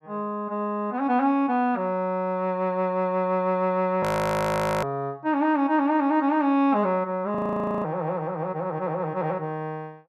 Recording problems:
frozen audio; at 4 s for 1 s and at 7.5 s

